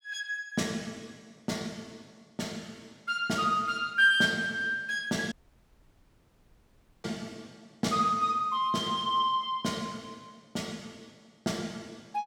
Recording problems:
dropout; at 5.5 s for 1.5 s

